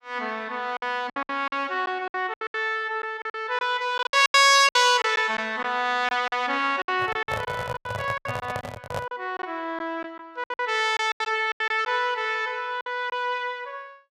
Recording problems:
lost packets; 12% of the sound replaced, filled with silence
microphone handling noise; from 7 to 9 s; peak -3 dB vs average level

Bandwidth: 15 kHz